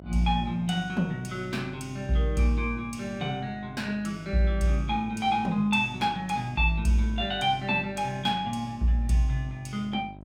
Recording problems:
hum; 50 Hz, harmonics up to 1.1 kHz, SNR 18 dB

